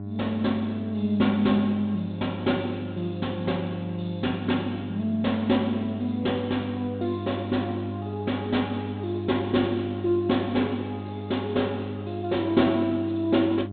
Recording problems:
low-pass filter; nothing above 4 kHz
hum; 50 Hz, harmonics up to 700 Hz, SNR 9 dB

